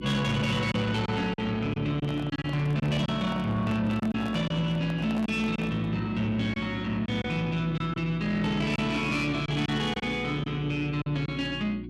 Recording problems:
distortion; soft clipping, signal-to-distortion ratio 11 dB
hum; 60 Hz, harmonics up to 360 Hz, SNR 12 dB
packet loss; 5% of the sound replaced, filled with silence
microphone handling noise; from 2 to 6 s; peak -5 dB vs average level

